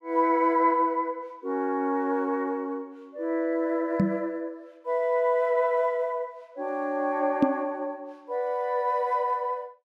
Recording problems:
microphone bump; at 4 s and at 7.5 s; peak +9 dB vs average level

